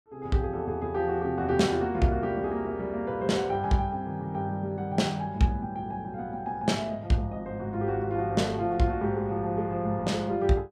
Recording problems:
none

